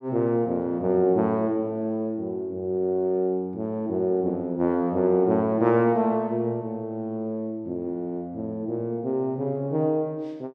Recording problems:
none

